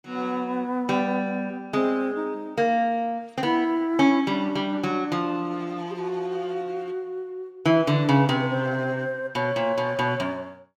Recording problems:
none

